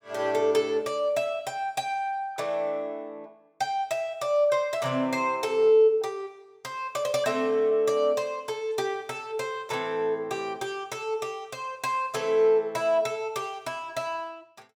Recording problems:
none

